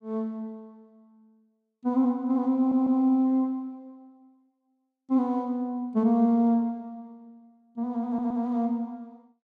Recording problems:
stutter; at 2.5 s and at 8 s

